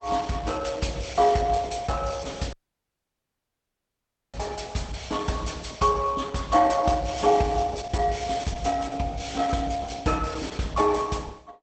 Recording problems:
lossy codec; Opus, log-spectral distance 5 dB, nothing above 8 kHz
audio cutting out; at 2.5 s for 2 s

